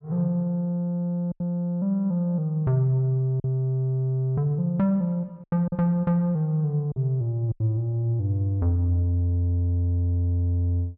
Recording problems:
lost packets; 3% of the sound replaced, filled with silence

